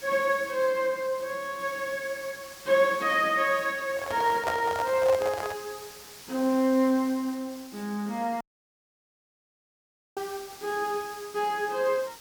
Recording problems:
hiss; slope 0 dB per octave, SNR 17 dB
microphone handling noise; from 4 to 5.5 s; peak +1 dB vs average level
dropout; at 8.5 s for 2 s

